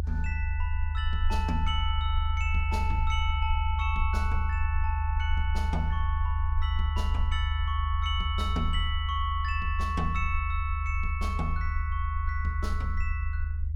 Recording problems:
low-frequency rumble; below 78 Hz, SNR -3 dB

